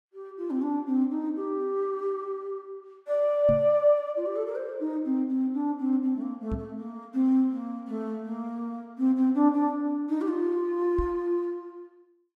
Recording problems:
knock on the microphone; at 3.5 s, at 6.5 s and at 11 s; peak 0 dB vs average level

